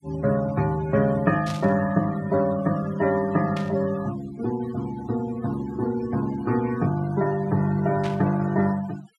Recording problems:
denoising artefacts; signal-to-artefact ratio 17 dB
static burst; at 1.5 s, at 3.5 s and at 8 s; peak -8 dB vs average level

